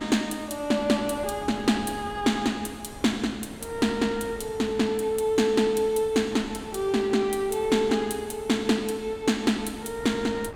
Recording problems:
wind on the microphone; below 660 Hz, SNR 18 dB

